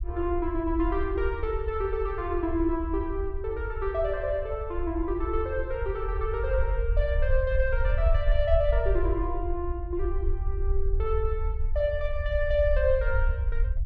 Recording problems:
rumble; below 62 Hz, SNR 2 dB

